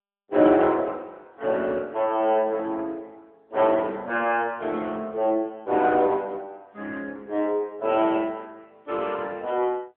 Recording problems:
phone line; 260 Hz to 3.3 kHz, AMR-NB

